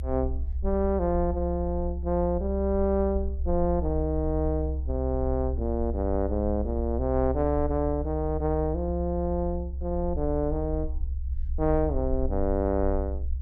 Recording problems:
low-frequency rumble; below 68 Hz, strongest tone 66 Hz, SNR 4 dB

